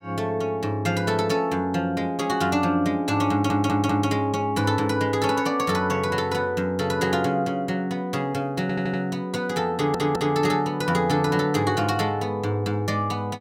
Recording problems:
audio stuttering; at 3.5 s, at 8.5 s and at 9.5 s

